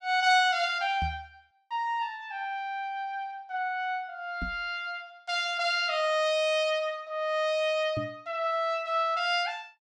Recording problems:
microphone thump; at 1 s, at 4.5 s and at 8 s; peak -2 dB vs average level

